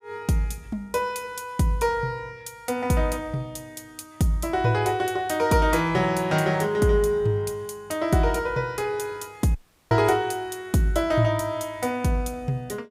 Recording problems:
dropout; at 9.5 s

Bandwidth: 15.5 kHz